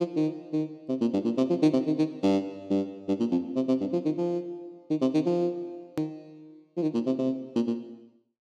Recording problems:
hard cut with a click; at 6 s

